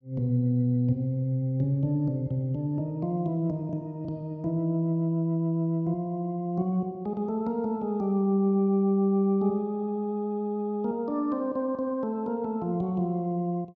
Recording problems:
none

